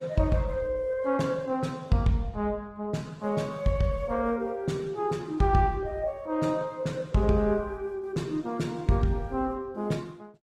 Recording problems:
lossy codec; Opus, log-spectral distance 2 dB, nothing above 18.9 kHz

